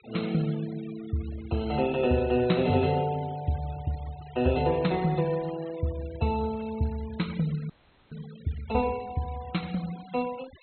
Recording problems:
treble missing; nothing above 4.2 kHz
noise reduction artefacts; signal-to-artefact ratio 20 dB
audio freezing; at 7.5 s

